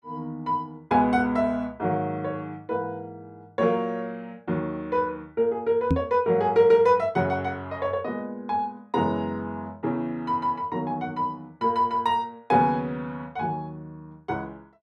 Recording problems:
knock on the microphone; at 6 s; peak +6 dB vs average level

